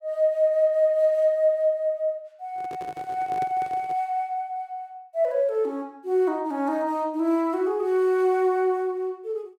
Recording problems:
microphone handling noise; from 2.5 to 4 s; peak -9 dB vs average level

